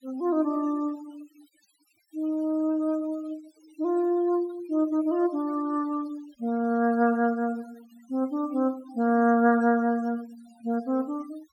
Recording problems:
noise reduction artefacts; signal-to-artefact ratio 24 dB

